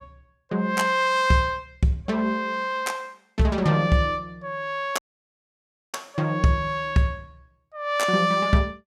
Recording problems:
audio cutting out; at 5 s for 1 s

